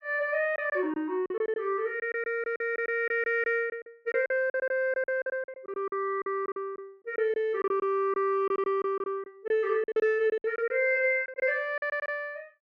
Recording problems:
lost packets; 13% of the sound replaced, filled with silence

